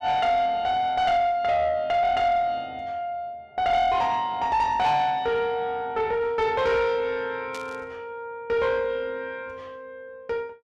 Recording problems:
distorted audio; soft clipping, signal-to-distortion ratio 10 dB
burst of static; at 7.5 s; peak -11 dB vs average level

